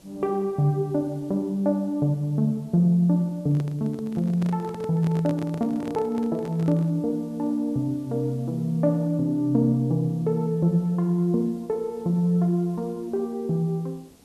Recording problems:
hiss; SNR 29 dB
handling noise; from 3.5 to 7 s; peak -7 dB vs average level

